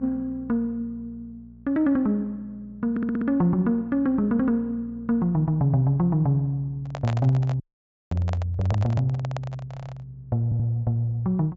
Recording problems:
treble cut off; nothing above 8 kHz
electrical hum; 60 Hz, harmonics up to 480 Hz, SNR 23 dB
stutter; at 3 s, at 9.5 s and at 10 s
handling noise; from 7 to 10 s; peak -4 dB vs average level
dropout; at 7.5 s for 0.5 s

